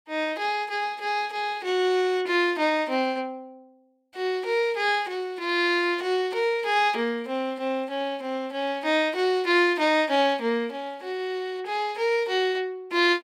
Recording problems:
none

